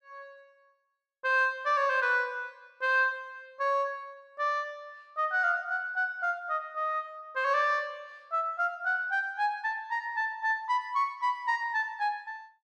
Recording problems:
none

